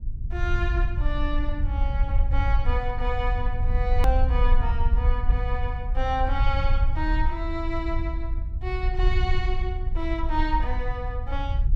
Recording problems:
low-frequency rumble; below 60 Hz, SNR -4 dB
hard cut with a click; at 4 s

